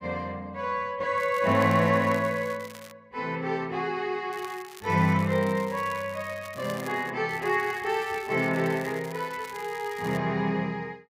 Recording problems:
crackling; from 1 to 3 s, from 4.5 to 7 s and from 7.5 to 10 s; loose cable, SNR 20 dB

